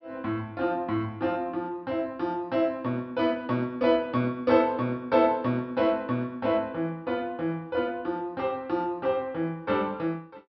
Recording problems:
treble missing; nothing above 5.5 kHz

